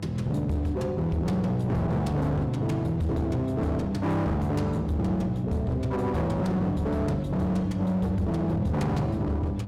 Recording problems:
distortion; hard clipping, signal-to-distortion ratio 7 dB
mains hum; 50 Hz, harmonics up to 1 kHz, SNR 10 dB

